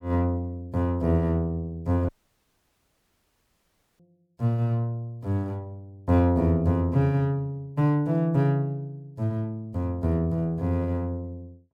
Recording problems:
dropout; at 2 s for 2 s

